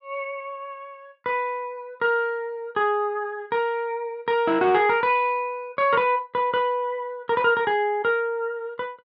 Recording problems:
none

